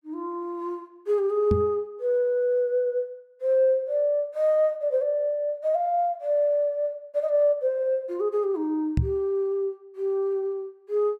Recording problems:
microphone bump; at 1.5 s and at 9 s; peak +5 dB vs average level

